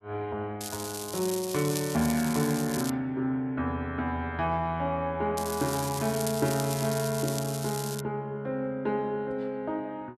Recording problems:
crackle; from 0.5 to 3 s and from 5.5 to 8 s; loose cable, SNR 7 dB

